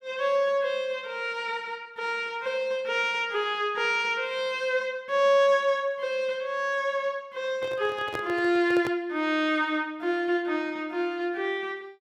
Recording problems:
microphone handling noise; from 7.5 to 9 s; peak -3 dB vs average level

